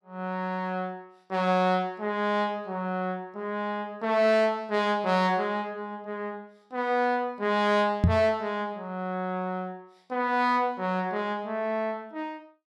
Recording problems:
microphone bump; at 8 s; peak +9 dB vs average level

